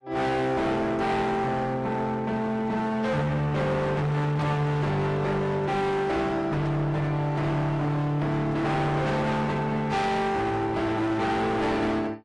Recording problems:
lossy codec; AAC, log-spectral distance 2 dB, nothing above 10.4 kHz
distorted audio; hard clipping, signal-to-distortion ratio 7 dB

